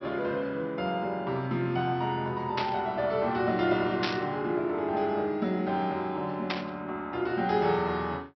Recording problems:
treble missing; nothing above 5.7 kHz
static burst; at 2.5 s, at 4 s and at 6.5 s; peak +2 dB vs average level

